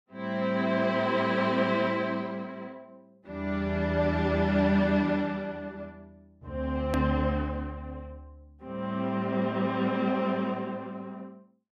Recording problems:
click at an edit; at 7 s

